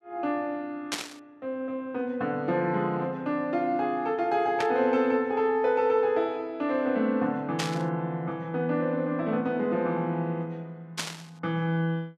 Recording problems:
static burst; 4 times, first at 1 s; peak +2 dB vs average level

